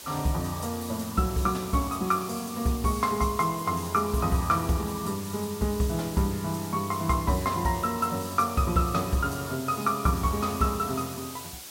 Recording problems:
hiss; slope 0 dB per octave, SNR 12 dB

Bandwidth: 16 kHz